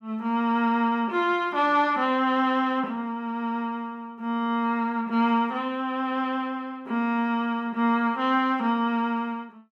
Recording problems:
none

